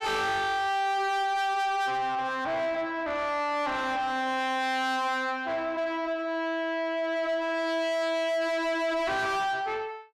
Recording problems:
distortion; soft clipping, signal-to-distortion ratio 6 dB

